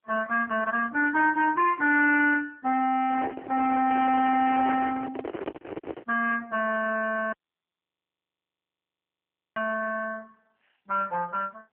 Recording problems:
telephone audio; 300 Hz to 2.6 kHz, AMR-NB
distorted audio; soft clipping, signal-to-distortion ratio 12 dB
handling noise; from 3 to 6 s; peak -3 dB vs average level
audio cutting out; at 7.5 s for 2 s

